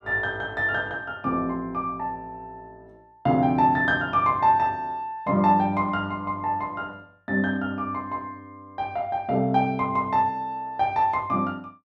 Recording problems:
none

